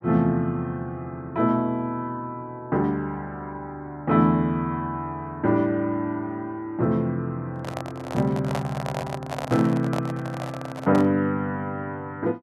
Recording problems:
handling noise; from 7.5 to 11 s; peak 0 dB vs average level

